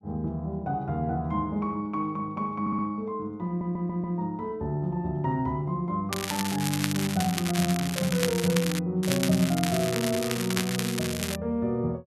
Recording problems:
audio stuttering; at 2.5 s and at 3.5 s
crackle; from 6 to 9 s and from 9 to 11 s; loose cable, SNR 4 dB

